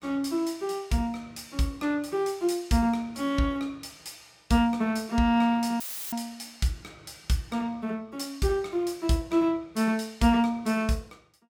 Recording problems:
dropout; at 6 s; filled with static

